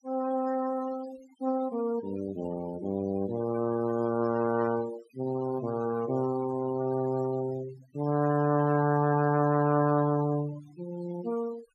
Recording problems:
noise reduction artefacts; signal-to-artefact ratio 18 dB

